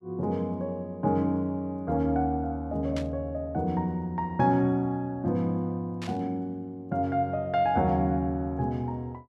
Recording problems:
burst of static; at 3 s and at 6 s; peak -7 dB vs average level

